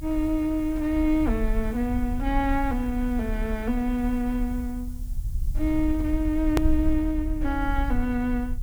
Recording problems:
background hiss; SNR 25 dB
low-frequency rumble; below 60 Hz, SNR 5 dB
edit click; at 6.5 s

